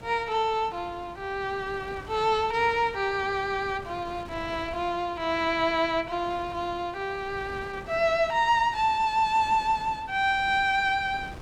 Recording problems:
wind on the microphone; below 680 Hz, SNR 19 dB

